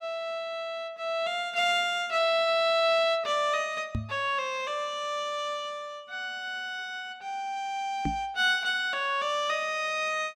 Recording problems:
microphone bump; at 4 s and at 8 s; peak +1 dB vs average level

